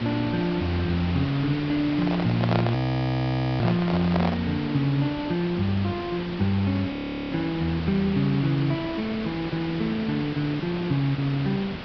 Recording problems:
low-pass filter; nothing above 5.5 kHz
background hiss; SNR 9 dB
microphone handling noise; from 2 to 4.5 s; peak +2 dB vs average level
audio freezing; at 3 s for 1 s and at 7 s

